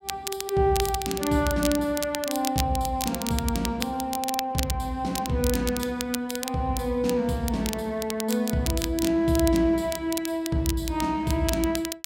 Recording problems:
crackle; vinyl, SNR 8 dB

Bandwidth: 16 kHz